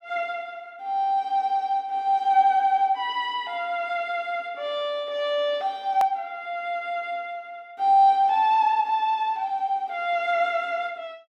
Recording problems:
hard cut with a click; at 6 s

